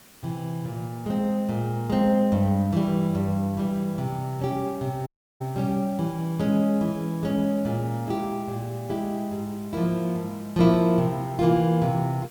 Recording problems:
background hiss; slope -2 dB per octave, SNR 23 dB
audio cutting out; at 5 s

